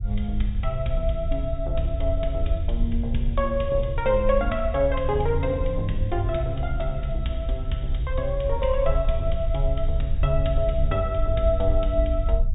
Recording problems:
low-pass filter; nothing above 4 kHz
rumble; below 58 Hz, SNR 3 dB

